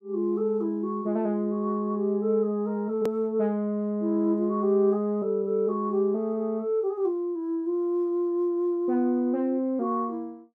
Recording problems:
click at an edit; at 3 s

